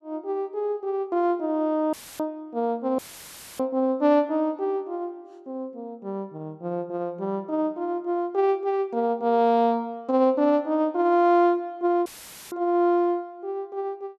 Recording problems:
dropout; at 2 s, at 3 s for 0.5 s and at 12 s; filled with static

